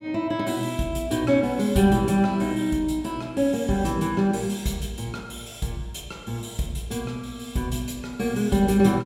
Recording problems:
none

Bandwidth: 16 kHz